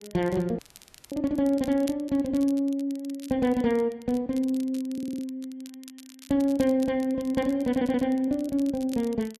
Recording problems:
crackling; vinyl, SNR 23 dB
audio cutting out; at 0.5 s for 0.5 s
stutter; at 5 s and at 7.5 s

